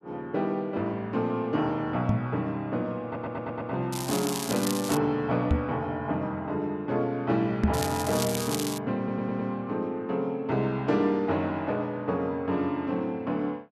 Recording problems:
microphone bump; at 2 s, at 5.5 s and at 7.5 s; peak +8 dB vs average level
stutter; at 3 s and at 9 s
crackling; from 4 to 5 s and from 7.5 to 9 s; loose cable, SNR 6 dB

